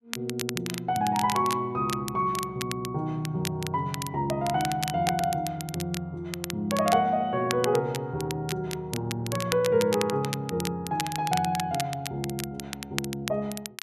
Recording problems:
crackle; vinyl, SNR 8 dB

